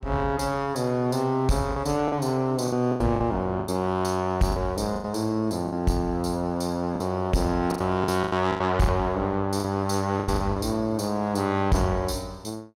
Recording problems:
distorted audio; soft clipping, signal-to-distortion ratio 12 dB
packet loss; 8% of the sound replaced, filled with the last packet

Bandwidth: 16.5 kHz